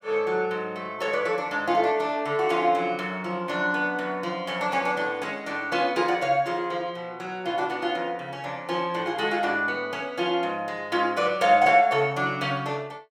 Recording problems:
none

